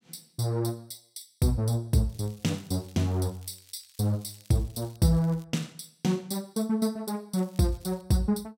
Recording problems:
crackle; from 2 to 5 s, at 5 s and at 7.5 s; loose cable, SNR 27 dB

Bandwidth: 16 kHz